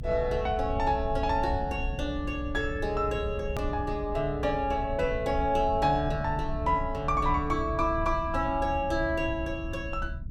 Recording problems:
low-frequency rumble; below 94 Hz, SNR 8 dB
hard cut with a click; at 3.5 s

